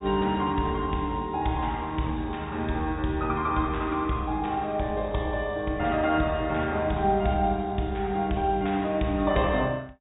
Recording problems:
treble cut off; nothing above 4 kHz

